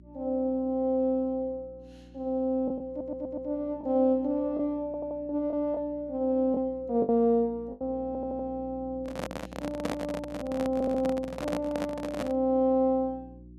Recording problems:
hum; 60 Hz, harmonics up to 360 Hz, SNR 21 dB
lost packets; 2% of the sound replaced, filled with the last packet
stutter; 4 times, first at 3 s
microphone handling noise; from 9 to 12 s; peak +1 dB vs average level

